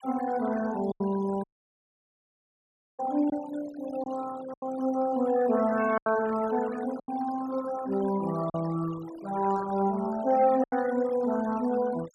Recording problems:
denoising artefacts; signal-to-artefact ratio 16 dB
lost packets; 4% of the sound replaced, filled with silence
dropout; at 1.5 s for 1.5 s
static burst; at 9.5 s; peak -23 dB vs average level

